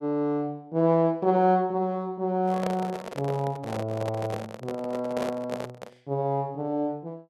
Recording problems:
handling noise; from 2.5 to 6 s; peak +1 dB vs average level

